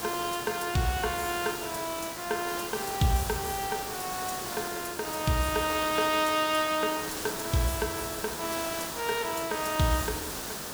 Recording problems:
background hiss; SNR 5 dB

